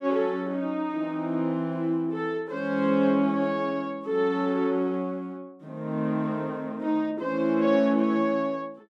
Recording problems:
none

